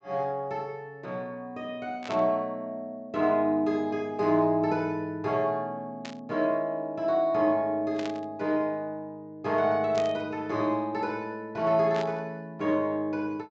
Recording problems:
low-pass filter; nothing above 8 kHz
static burst; 5 times, first at 2 s; peak -6 dB vs average level

